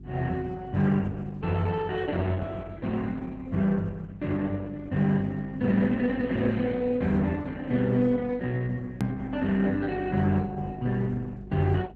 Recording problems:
lossy codec; Opus, log-spectral distance 3 dB, nothing above 13.1 kHz
hum; 50 Hz, harmonics up to 400 Hz, SNR 19 dB
edit click; at 9 s

